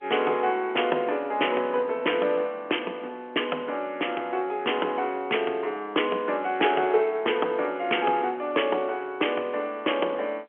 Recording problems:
phone line; 300 Hz to 3.3 kHz, G.711

